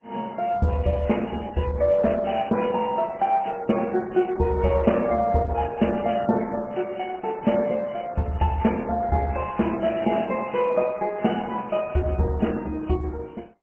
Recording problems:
codec artefacts; MP3, then Opus, log-spectral distance 5 dB

